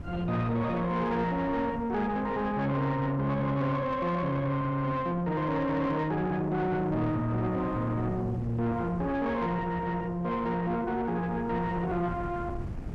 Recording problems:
distorted audio; soft clipping, signal-to-distortion ratio 10 dB
wind on the microphone; below 240 Hz, SNR 13 dB

